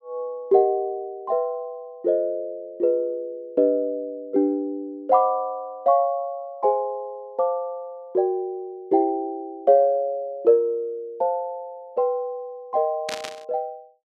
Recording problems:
static burst; at 13 s; peak -3 dB vs average level

